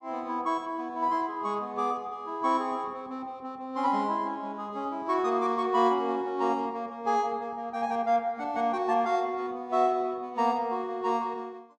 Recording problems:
none

